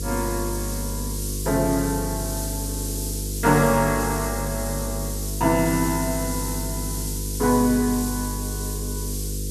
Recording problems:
electrical hum; 50 Hz, harmonics up to 500 Hz, SNR 6 dB
background hiss; SNR 7 dB

